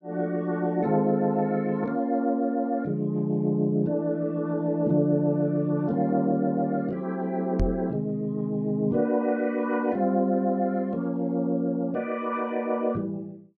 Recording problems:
knock on the microphone; at 7.5 s; peak +1 dB vs average level

